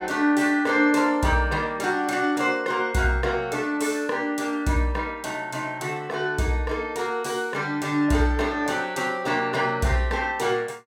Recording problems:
none

